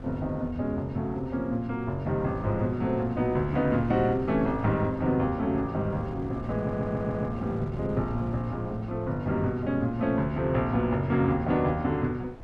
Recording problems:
wind on the microphone; below 300 Hz, SNR 15 dB
stutter; at 6.5 s

